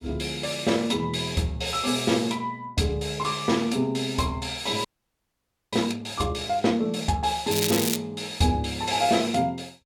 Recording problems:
frozen audio; at 5 s for 1 s
crackling; at 7.5 s; loose cable, SNR 2 dB

